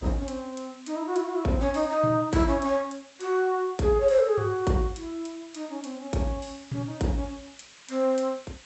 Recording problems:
treble cut off; nothing above 8 kHz
background hiss; SNR 24 dB

